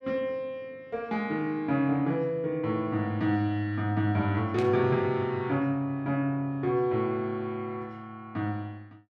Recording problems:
static burst; at 4.5 s; peak -8 dB vs average level

